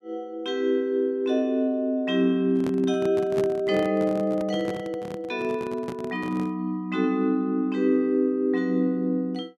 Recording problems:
microphone handling noise; from 2.5 to 6.5 s; peak -2 dB vs average level

